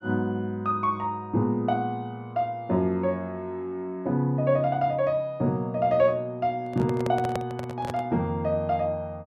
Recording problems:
microphone handling noise; from 6.5 to 8 s; peak 0 dB vs average level

